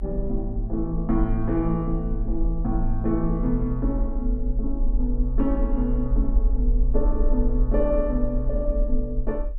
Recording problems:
rumble; below 44 Hz, SNR 1 dB

